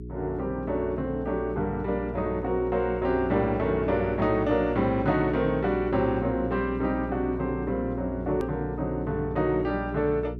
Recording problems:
hum; 60 Hz, harmonics up to 420 Hz, SNR 10 dB
hard cut with a click; at 8.5 s

